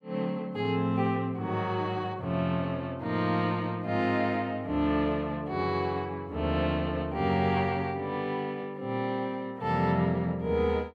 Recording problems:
none

